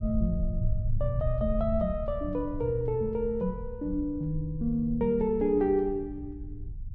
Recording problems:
rumble; below 78 Hz, SNR 8 dB

